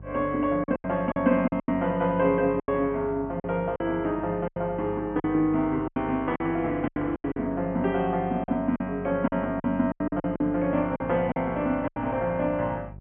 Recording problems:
treble cut off; nothing above 3.4 kHz
hum; 50 Hz, harmonics up to 600 Hz, SNR 17 dB
lost packets; 11% of the sound replaced, filled with silence

